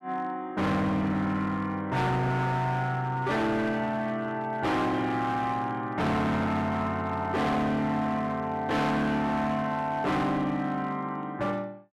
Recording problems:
distortion; hard clipping, uneven, signal-to-distortion ratio 7 dB

